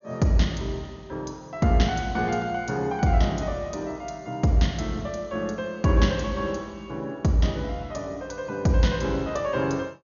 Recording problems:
low-pass filter; nothing above 6.8 kHz

